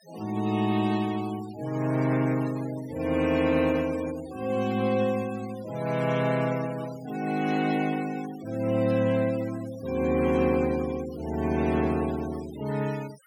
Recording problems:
denoising artefacts; signal-to-artefact ratio 18 dB

